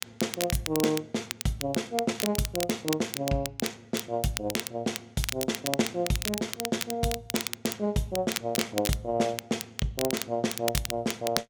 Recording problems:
crackle; vinyl, SNR 4 dB

